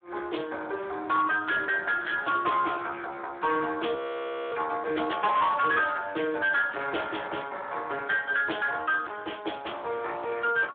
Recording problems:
phone line; 260 Hz to 3.6 kHz, Speex
distortion; hard clipping, signal-to-distortion ratio 10 dB
frozen audio; at 4 s for 0.5 s

